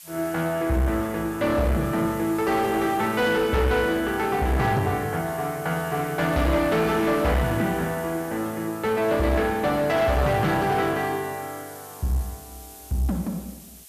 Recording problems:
distorted audio; hard clipping, uneven, signal-to-distortion ratio 9 dB
hiss; slope +3 dB per octave, SNR 19 dB

